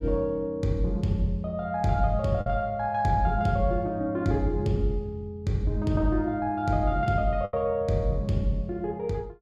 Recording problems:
lost packets; 1.5% of the sound replaced, filled with the last packet

